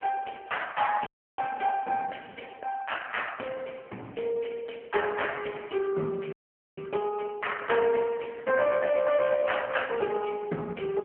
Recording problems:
telephone audio; 190 Hz to 3.2 kHz, AMR-NB
dropout; at 1 s and at 6.5 s

